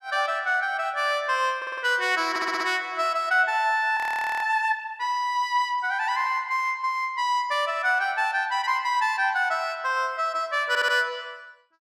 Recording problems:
audio stuttering; at 1.5 s, at 2.5 s and at 11 s
frozen audio; at 4 s

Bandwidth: 14.5 kHz